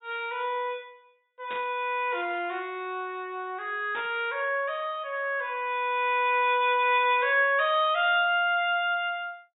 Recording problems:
treble cut off; nothing above 4 kHz
static burst; at 1.5 s and at 4 s; peak -10 dB vs average level

